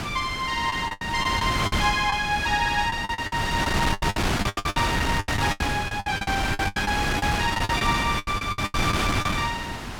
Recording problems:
wind noise; below 2.1 kHz, SNR 1 dB
packet loss; 18% of the sound replaced, filled with the last packet

